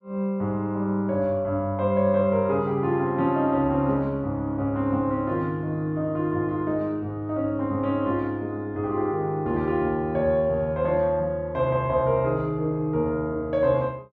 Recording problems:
none

